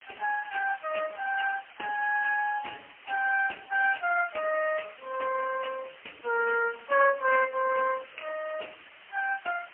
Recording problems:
telephone audio; 410 Hz to 2.7 kHz, AMR-NB, then MP3
hiss; SNR 21 dB

